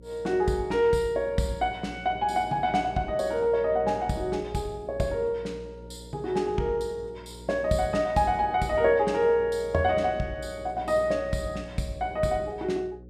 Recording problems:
hum; 60 Hz, harmonics up to 540 Hz, SNR 19 dB

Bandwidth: 15.5 kHz